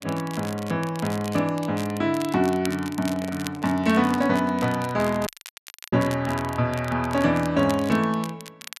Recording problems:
crackling; vinyl, SNR 16 dB
handling noise; from 3 to 4.5 s; peak -12 dB vs average level
dropout; at 5.5 s for 0.5 s

